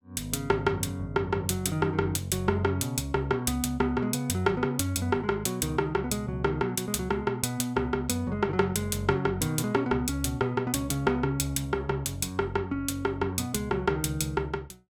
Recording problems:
none

